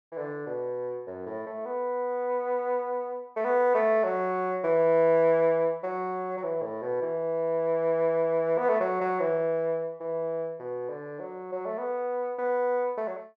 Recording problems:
none

